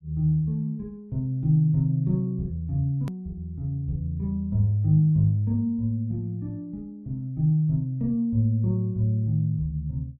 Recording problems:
edit click; at 3 s

